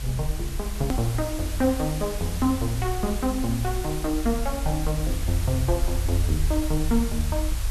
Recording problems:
hiss; slope 0 dB per octave, SNR 10 dB
rumble; below 54 Hz, SNR 4 dB
edit click; at 1 s

